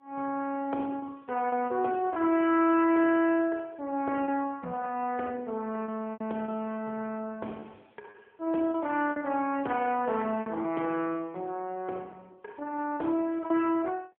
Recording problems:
telephone audio; 260 Hz to 3.5 kHz, AMR-NB
packet loss; 5% of the sound replaced, filled with repeated pitch periods

